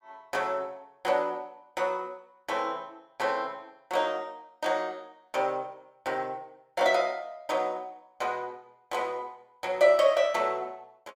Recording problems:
none

